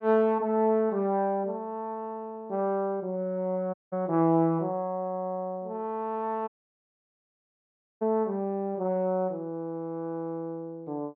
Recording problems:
dropout; at 3.5 s and at 6.5 s for 1.5 s

